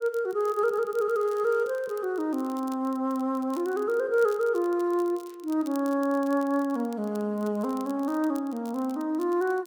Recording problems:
crackle; vinyl, SNR 25 dB

